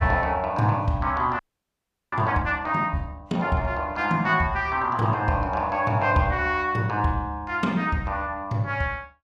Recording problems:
audio freezing; at 1.5 s for 0.5 s

